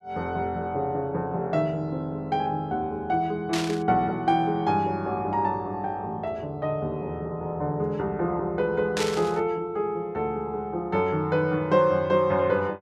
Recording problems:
static burst; at 3.5 s and at 9 s; peak 0 dB vs average level

